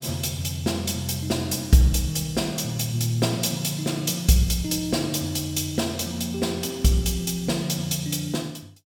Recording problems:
none

